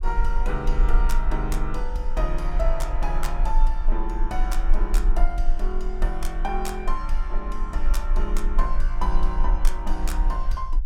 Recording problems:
rumble; below 36 Hz, strongest tone 18 Hz, SNR -4 dB

